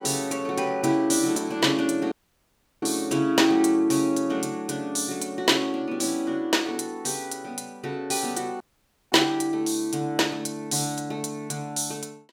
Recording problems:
dropout; at 2 s for 0.5 s and at 8.5 s for 0.5 s

